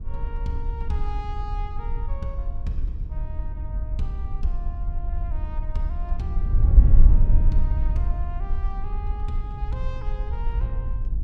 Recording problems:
wind noise; below 56 Hz, SNR -11 dB

